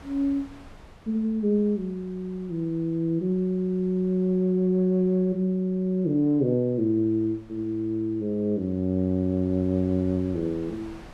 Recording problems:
wind on the microphone; below 870 Hz, SNR 26 dB

